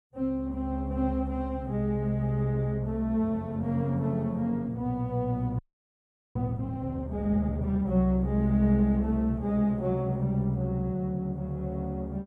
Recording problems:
frozen audio; at 5.5 s for 1 s

